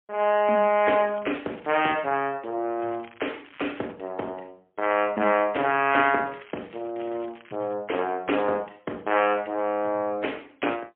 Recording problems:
phone line; 260 Hz to 3.3 kHz, AMR-NB, then MP3
crackle; from 0.5 to 2 s, from 3 to 4 s and from 6 to 7.5 s; loose cable, SNR 24 dB

